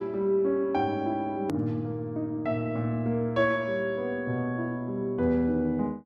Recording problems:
hard cut with a click; at 1.5 s

